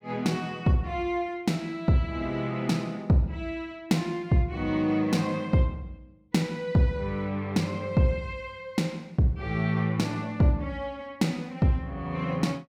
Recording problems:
none

